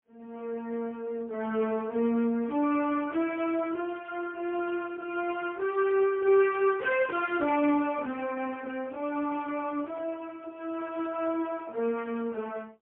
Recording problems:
telephone audio; 240 Hz to 3.2 kHz, AMR-NB, then MP3

